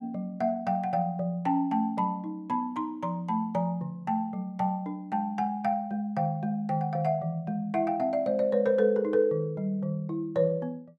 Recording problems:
none

